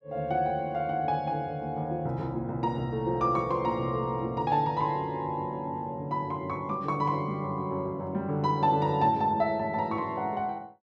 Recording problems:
none

